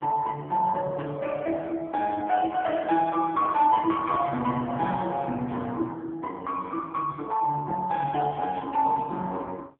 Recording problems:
telephone audio; 190 Hz to 3 kHz, AMR-NB
static burst; at 4 s, at 5.5 s and at 8.5 s; peak -17 dB vs average level

